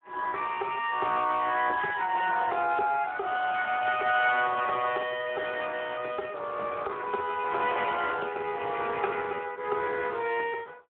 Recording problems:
telephone audio; 320 Hz to 3.3 kHz, Speex

